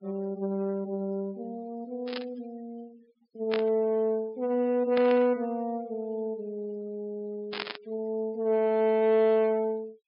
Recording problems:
treble cut off; nothing above 5.5 kHz
denoising artefacts; signal-to-artefact ratio 27 dB
static burst; 4 times, first at 2 s; peak -1 dB vs average level

